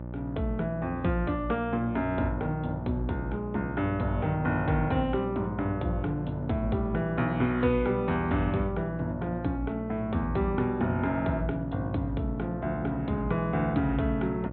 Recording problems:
treble cut off; nothing above 4 kHz
hum; 60 Hz, harmonics up to 1.2 kHz, SNR 9 dB

